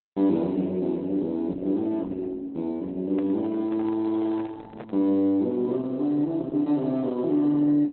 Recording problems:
codec artefacts; Opus, log-spectral distance 2 dB, nothing above 4.1 kHz
microphone handling noise; from 3 to 5 s; peak -7 dB vs average level

